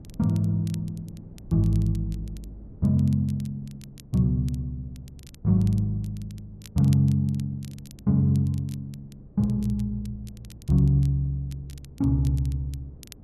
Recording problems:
wind on the microphone; below 230 Hz, SNR 24 dB
crackle; vinyl, SNR 27 dB

